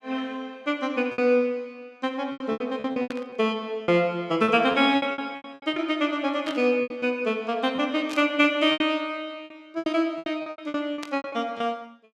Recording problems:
lost packets; 14% of the sound replaced, filled with repeated pitch periods
burst of static; 4 times, first at 3 s; peak -7 dB vs average level

